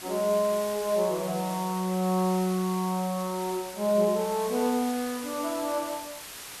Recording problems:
hiss; slope 0 dB per octave, SNR 12 dB

